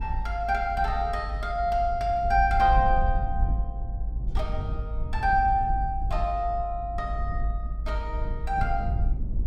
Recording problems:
low-frequency rumble; below 60 Hz, SNR 4 dB

